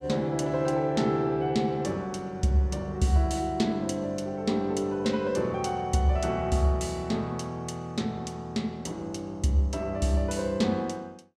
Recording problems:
none

